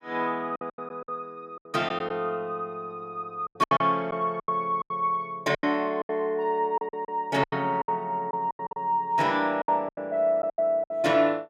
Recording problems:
lost packets; 13% of the sound replaced, filled with silence

